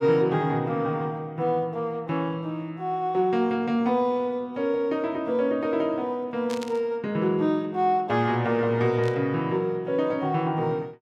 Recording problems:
static burst; at 6.5 s and at 9 s; peak -8 dB vs average level

